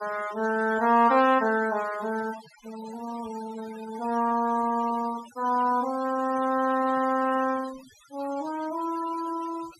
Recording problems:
noise reduction artefacts; signal-to-artefact ratio 18 dB

